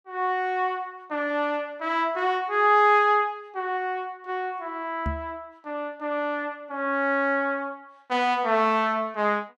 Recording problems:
microphone thump; at 5 s; peak -2 dB vs average level

